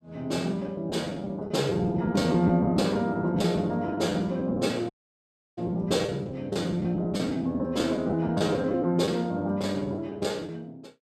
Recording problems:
lost packets; 12% of the sound replaced, filled with the last packet
audio cutting out; at 5 s for 0.5 s

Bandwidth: 15.5 kHz